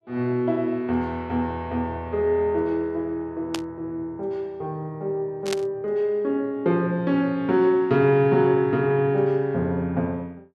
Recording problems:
burst of static; at 3.5 s and at 5.5 s; peak -2 dB vs average level

